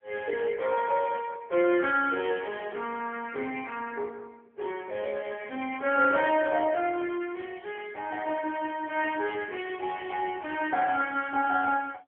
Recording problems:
telephone audio; 240 Hz to 3.3 kHz, AMR-NB

